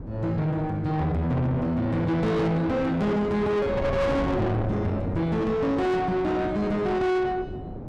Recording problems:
distorted audio; soft clipping, signal-to-distortion ratio 8 dB
wind on the microphone; below 550 Hz, SNR 9 dB

